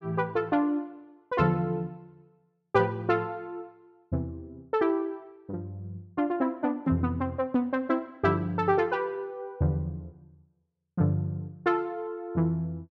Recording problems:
none

